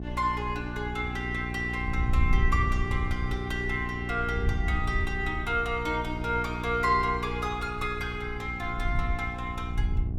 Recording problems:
hum; 60 Hz, harmonics up to 780 Hz, SNR 6 dB
wind on the microphone; below 80 Hz, SNR 4 dB

